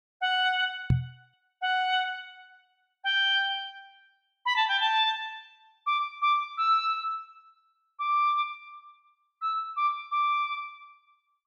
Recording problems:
microphone thump; at 1 s; peak +6 dB vs average level

